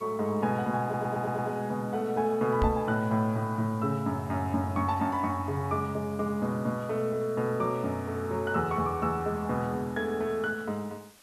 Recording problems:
hiss; slope -1 dB per octave, SNR 25 dB
stutter; at 1 s
knock on the microphone; at 2.5 s; peak +4 dB vs average level

